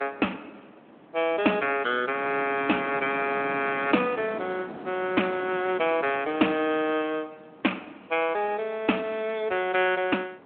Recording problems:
telephone audio; 240 Hz to 3.4 kHz, Speex
wind on the microphone; below 850 Hz, SNR 15 dB

